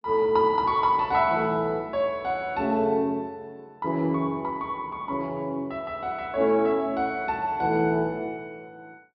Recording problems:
treble cut off; nothing above 5.5 kHz

